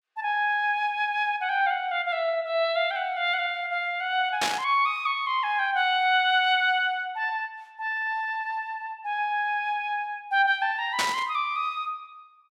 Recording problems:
burst of static; at 4.5 s and at 11 s; peak +3 dB vs average level

